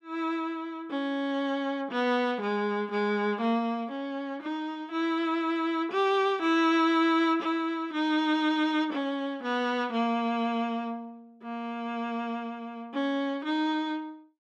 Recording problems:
none

